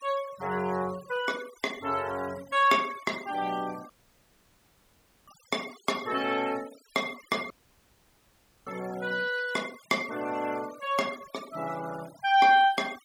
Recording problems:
denoising artefacts; signal-to-artefact ratio 18 dB
dropout; at 4 s for 1.5 s and at 7.5 s for 1 s

